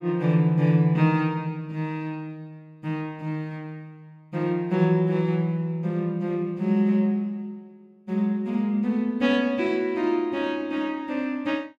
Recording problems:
none

